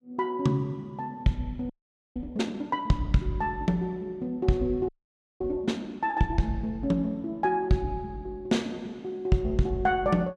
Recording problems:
audio freezing; at 1.5 s and at 5 s for 0.5 s

